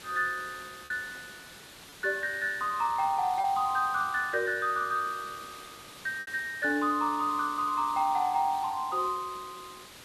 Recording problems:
background hiss; slope -1 dB per octave, SNR 17 dB
packet loss; 1.8% of the sound replaced, filled with repeated pitch periods

